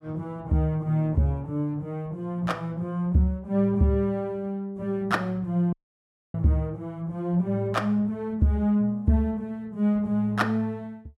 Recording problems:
audio cutting out; at 5.5 s for 0.5 s

